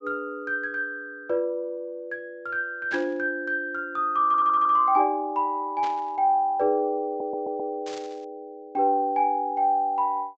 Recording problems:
low-pass filter; nothing above 8 kHz
burst of static; at 3 s, at 6 s and at 8 s; peak -10 dB vs average level
audio stuttering; at 4.5 s and at 7 s

